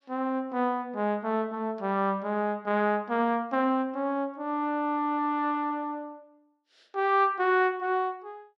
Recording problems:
none

